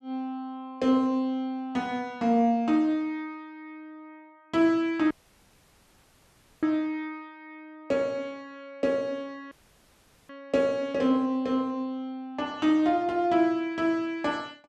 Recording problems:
dropout; at 5 s for 1.5 s and at 9.5 s for 1 s

